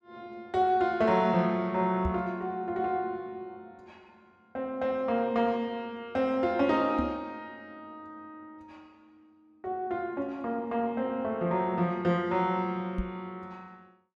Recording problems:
microphone thump; at 2 s, at 7 s and at 13 s; peak 0 dB vs average level

